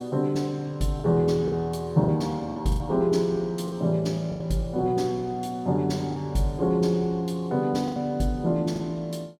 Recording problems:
lost packets; 6% of the sound replaced, filled with the last packet

